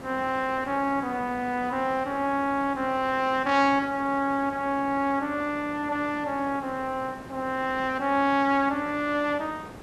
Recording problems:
hiss; slope -7 dB per octave, SNR 17 dB

